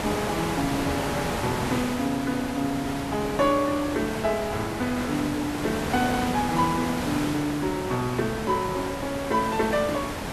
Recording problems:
hiss; slope -5 dB per octave, SNR 4 dB
wind noise; below 640 Hz, SNR 21 dB

